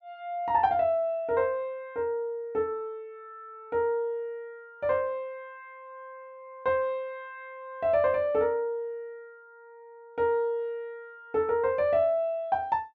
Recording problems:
none

